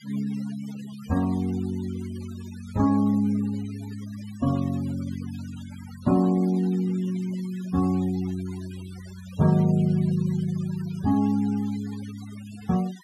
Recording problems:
noise reduction artefacts; signal-to-artefact ratio 21 dB

